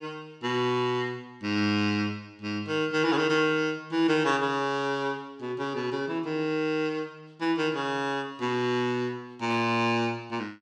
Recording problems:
static burst; at 9.5 s; peak -12 dB vs average level

